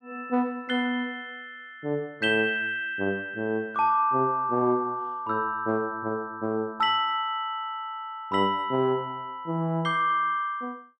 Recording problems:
none

